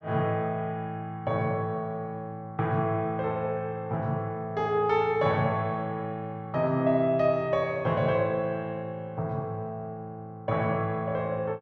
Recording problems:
none

